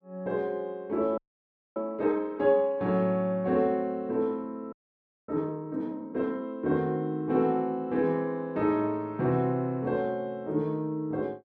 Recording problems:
audio freezing; at 1 s for 0.5 s and at 4.5 s for 0.5 s

